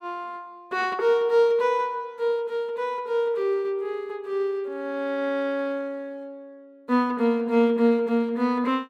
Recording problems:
none

